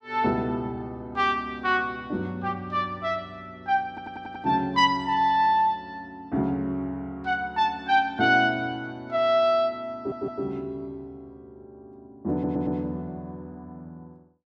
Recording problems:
stutter; at 4 s, at 10 s and at 12 s

